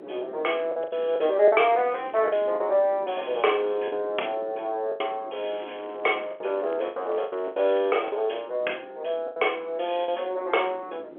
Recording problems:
telephone audio; 300 Hz to 3.4 kHz, G.711
wind noise; below 500 Hz, SNR 20 dB
lost packets; 8% of the sound replaced, filled with the last packet
crackling; at 2 s and from 5.5 to 8 s; loose cable, SNR 28 dB

